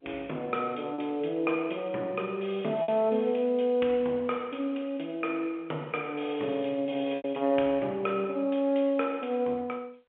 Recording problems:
phone line; 300 Hz to 3.4 kHz, G.711
lost packets; 1.8% of the sound replaced, filled with repeated pitch periods

